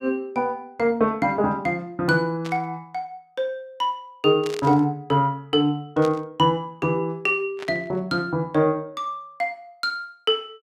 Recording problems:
static burst; 4 times, first at 2.5 s; peak -7 dB vs average level

